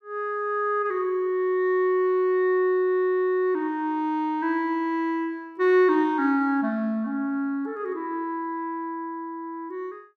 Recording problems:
none

